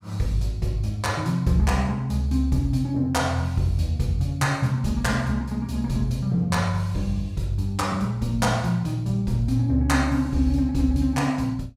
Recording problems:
none

